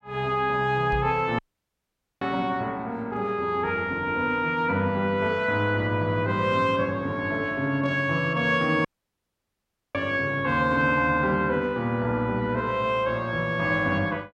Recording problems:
knock on the microphone; at 1 s; peak -3 dB vs average level
audio cutting out; at 1.5 s for 1 s and at 9 s for 1 s

